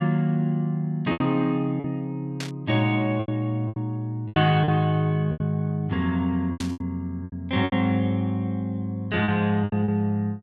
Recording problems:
packet loss; 9% of the sound replaced, filled with repeated pitch periods
burst of static; at 2.5 s and at 6.5 s; peak -5 dB vs average level

